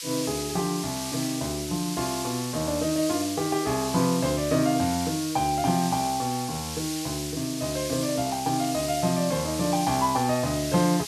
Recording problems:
background hiss; slope +7 dB per octave, SNR 6 dB

